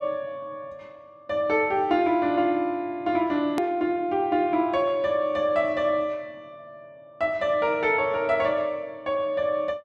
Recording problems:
click at an edit; at 3.5 s

